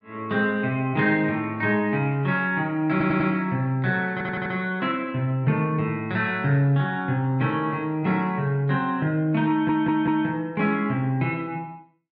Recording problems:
stutter; at 3 s, at 4 s and at 9.5 s

